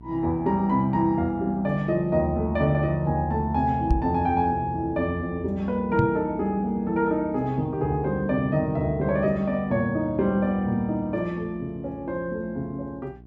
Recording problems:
hum; 60 Hz, harmonics up to 720 Hz, SNR 21 dB
microphone bump; at 4 s and at 6 s; peak +6 dB vs average level

